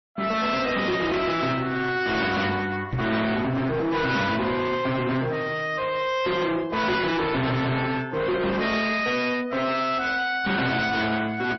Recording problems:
lossy compression; MP3, then AAC, log-spectral distance 4 dB, nothing above 5.7 kHz
distorted audio; hard clipping, signal-to-distortion ratio 7 dB
microphone thump; at 3 s; peak 0 dB vs average level

